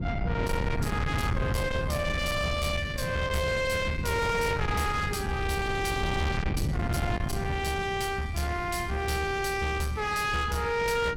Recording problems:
distorted audio; soft clipping, signal-to-distortion ratio 8 dB
wind on the microphone; below 260 Hz, SNR 4 dB

